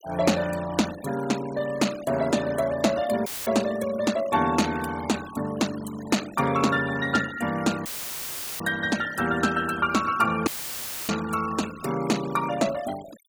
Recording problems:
noise reduction artefacts; signal-to-artefact ratio 16 dB
dropout; at 3.5 s, at 8 s for 0.5 s and at 10 s for 0.5 s; filled with static

